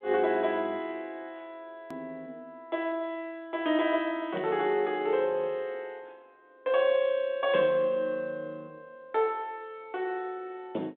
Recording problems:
phone line; 240 Hz to 3.7 kHz, G.726
hard cut with a click; at 2 s

